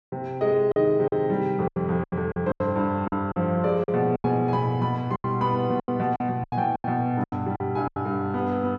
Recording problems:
lost packets; 13% of the sound replaced, filled with silence

